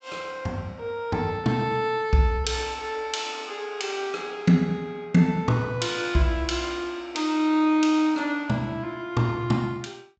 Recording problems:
treble cut off; nothing above 8 kHz

